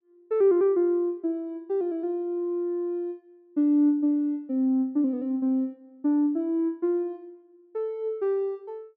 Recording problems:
none

